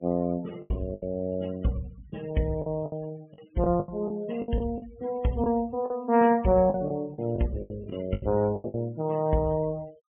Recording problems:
low-pass filter; nothing above 3.2 kHz
noise reduction artefacts; signal-to-artefact ratio 21 dB
lost packets; 11% of the sound replaced, filled with the last packet

